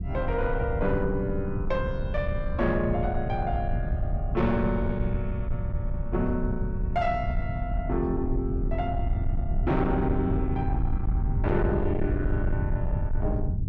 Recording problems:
distortion; soft clipping, signal-to-distortion ratio 11 dB
low-frequency rumble; below 110 Hz, SNR 1 dB

